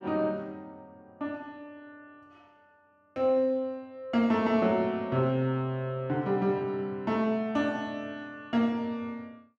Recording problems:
none

